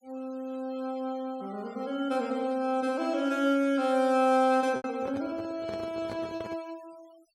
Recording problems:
noise reduction artefacts; signal-to-artefact ratio 24 dB
lost packets; 1.7% of the sound replaced, filled with repeated pitch periods
handling noise; from 5 to 6.5 s; peak -7 dB vs average level

